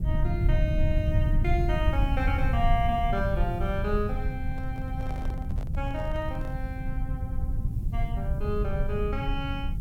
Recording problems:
background hiss; slope +2 dB per octave, SNR 29 dB
low-frequency rumble; below 110 Hz, SNR -3 dB
microphone handling noise; from 4.5 to 6.5 s; peak -8 dB vs average level

